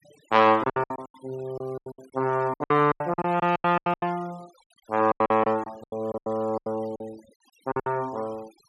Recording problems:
denoising artefacts; signal-to-artefact ratio 25 dB
packet loss; 21% of the sound replaced, filled with silence

